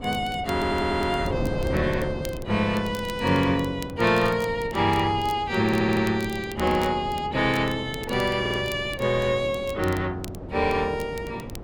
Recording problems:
wind noise; below 410 Hz, SNR 11 dB
crackle; vinyl, SNR 21 dB
stutter; at 0.5 s, at 5.5 s and at 8.5 s

